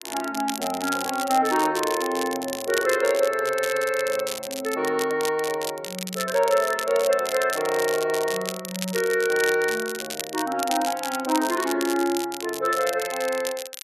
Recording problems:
crackle; vinyl, SNR 9 dB

